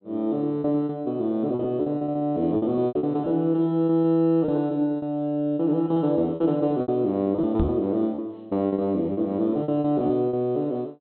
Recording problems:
treble missing; nothing above 4.1 kHz
lost packets; 13% of the sound replaced, filled with repeated pitch periods
knock on the microphone; at 7.5 s; peak +1 dB vs average level

